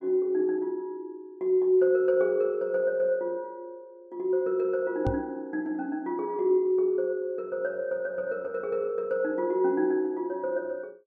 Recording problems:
microphone bump; at 5 s; peak +1 dB vs average level

